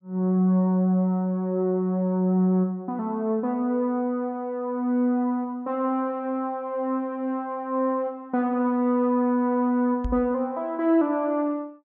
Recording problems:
microphone bump; at 10 s; peak -2 dB vs average level

